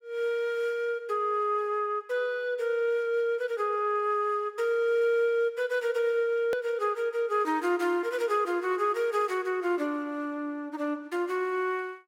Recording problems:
hard cut with a click; at 6.5 s

